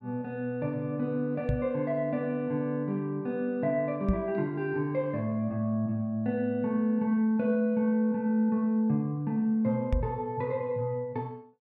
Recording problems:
microphone bump; at 1.5 s, at 4 s and at 10 s; peak +4 dB vs average level

